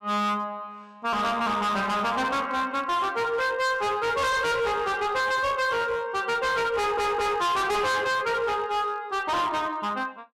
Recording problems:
distortion; hard clipping, uneven, signal-to-distortion ratio 6 dB
audio stuttering; at 7 s

